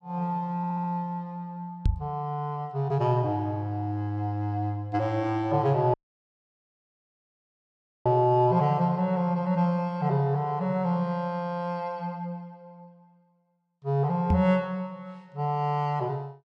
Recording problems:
audio stuttering; at 0.5 s
microphone thump; at 2 s and at 14 s; peak +6 dB vs average level
audio cutting out; at 6 s for 2 s

